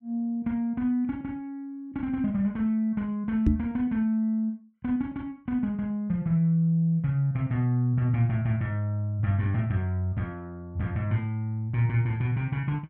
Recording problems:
knock on the microphone; at 3.5 s; peak +7 dB vs average level

